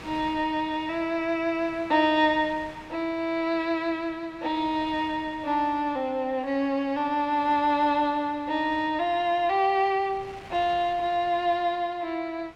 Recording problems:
wind on the microphone; below 2.4 kHz, SNR 22 dB

